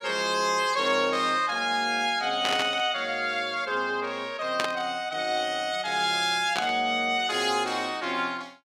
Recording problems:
static burst; at 2.5 s, at 4.5 s and at 6.5 s; peak +2 dB vs average level

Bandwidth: 17 kHz